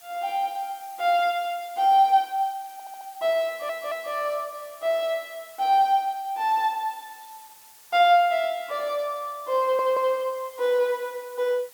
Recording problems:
hiss; SNR 23 dB
stutter; at 2.5 s, at 3.5 s and at 9.5 s

